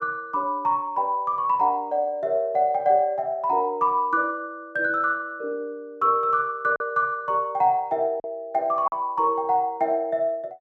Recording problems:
packet loss; 1.1% of the sound replaced, filled with silence

